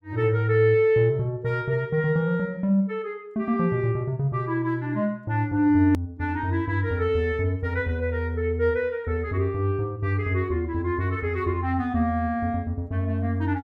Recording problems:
click at an edit; at 6 s

